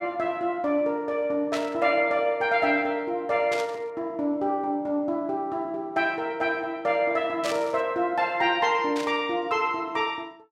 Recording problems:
burst of static; 4 times, first at 1.5 s; peak -3 dB vs average level

